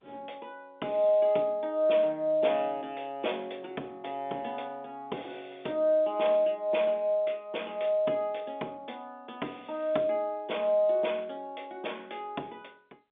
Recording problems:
phone line; 190 Hz to 3.6 kHz, G.711

